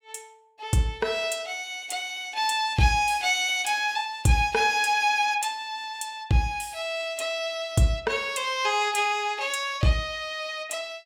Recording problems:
none

